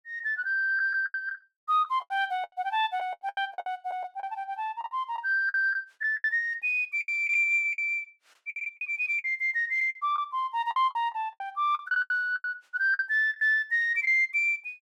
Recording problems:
lost packets; 13% of the sound replaced, filled with the last packet

